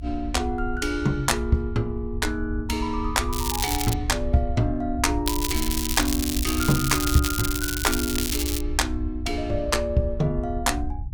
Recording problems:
rumble; below 74 Hz, SNR 6 dB
crackling; at 3.5 s and from 5.5 to 8.5 s; loose cable, SNR 3 dB

